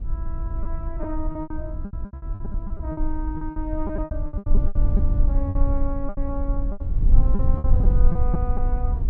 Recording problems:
low-frequency rumble; below 56 Hz, strongest tone 18 Hz, SNR -8 dB
packet loss; 16% of the sound replaced, filled with repeated pitch periods

